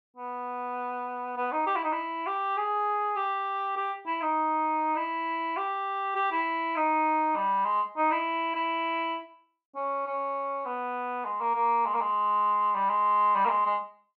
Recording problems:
none

